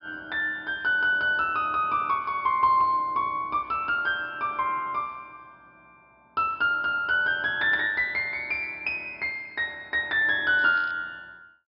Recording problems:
treble cut off; nothing above 5.5 kHz
crackle; at 11 s; loose cable, SNR 29 dB

